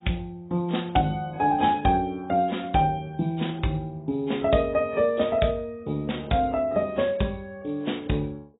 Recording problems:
lossy compression; AAC, log-spectral distance 4 dB, nothing above 3.8 kHz

